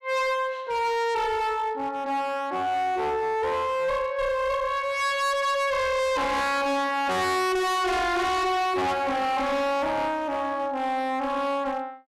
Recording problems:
distorted audio; hard clipping, signal-to-distortion ratio 6 dB

